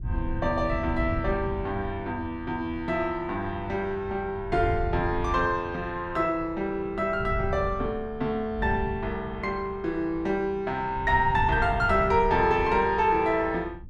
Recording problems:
wind noise; below 120 Hz, SNR 10 dB

